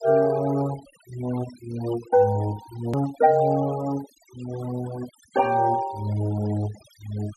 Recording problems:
noise reduction artefacts; signal-to-artefact ratio 18 dB
click at an edit; at 3 s

